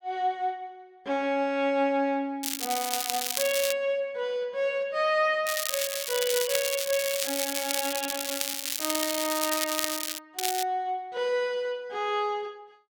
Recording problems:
crackling; from 2.5 to 3.5 s, from 5.5 to 10 s and at 10 s; loose cable, SNR 0 dB

